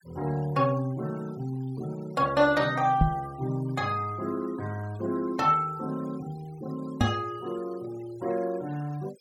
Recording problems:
noise reduction artefacts; signal-to-artefact ratio 22 dB
microphone bump; at 3 s and at 7 s; peak +9 dB vs average level

